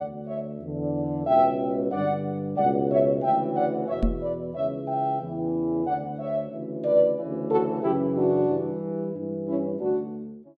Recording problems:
microphone bump; at 4 s; peak +5 dB vs average level

